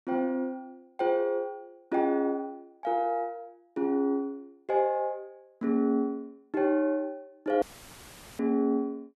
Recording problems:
audio cutting out; at 7.5 s for 1 s; filled with static

